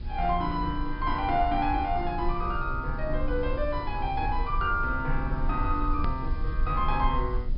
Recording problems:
treble cut off; nothing above 5.5 kHz
mains hum; 60 Hz, harmonics up to 960 Hz, SNR 20 dB
hiss; slope 0 dB per octave, SNR 28 dB
rumble; below 56 Hz, SNR 5 dB
edit click; at 6 s

